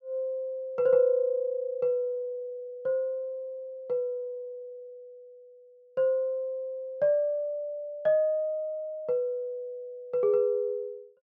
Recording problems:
none

